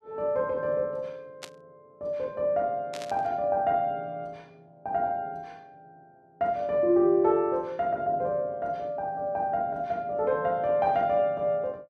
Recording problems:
burst of static; at 1.5 s and at 3 s; peak -7 dB vs average level

